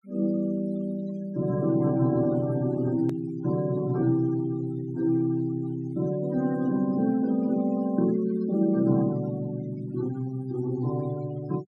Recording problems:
denoising artefacts; signal-to-artefact ratio 20 dB
hard cut with a click; at 3 s

